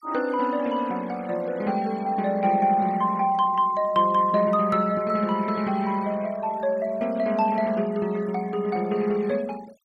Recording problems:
denoising artefacts; signal-to-artefact ratio 22 dB

